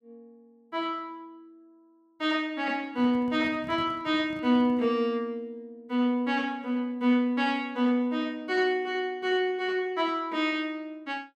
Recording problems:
microphone handling noise; from 3 to 5 s; peak -12 dB vs average level

